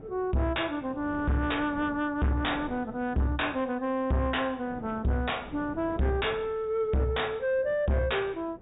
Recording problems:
treble cut off; nothing above 4 kHz
distortion; soft clipping, signal-to-distortion ratio 7 dB
wind on the microphone; below 450 Hz, SNR 17 dB

